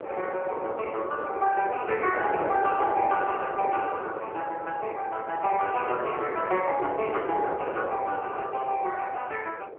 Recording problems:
telephone audio; 370 Hz to 3.1 kHz, AMR-NB
wind on the microphone; below 620 Hz, SNR 6 dB

